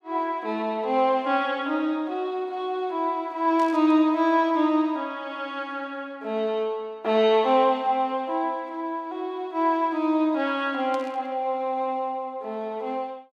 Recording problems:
burst of static; at 3.5 s and at 11 s; peak -13 dB vs average level

